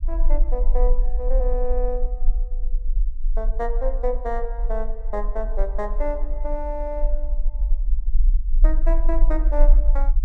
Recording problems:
rumble; below 38 Hz, strongest tone 20 Hz, SNR -5 dB

